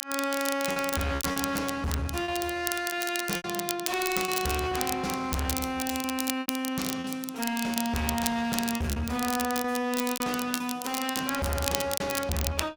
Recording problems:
distorted audio; hard clipping, uneven, signal-to-distortion ratio 7 dB
crackle; vinyl, SNR 4 dB
lost packets; 8% of the sound replaced, filled with repeated pitch periods

